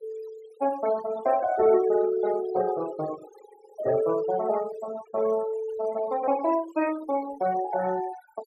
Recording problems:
noise reduction artefacts; signal-to-artefact ratio 17 dB

